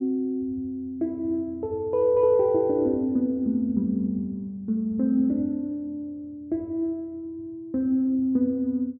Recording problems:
none

